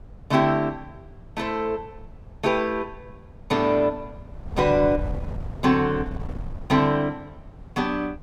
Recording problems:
wind on the microphone; below 140 Hz, SNR 15 dB

